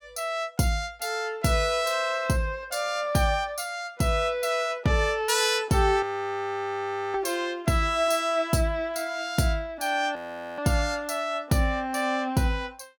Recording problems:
frozen audio; at 6 s for 1 s and at 10 s

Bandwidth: 17.5 kHz